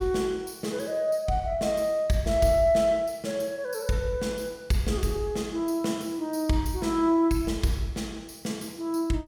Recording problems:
none

